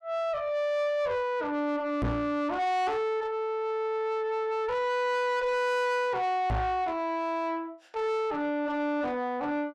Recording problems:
distortion; soft clipping, signal-to-distortion ratio 7 dB
microphone thump; at 2 s and at 6.5 s; peak +3 dB vs average level

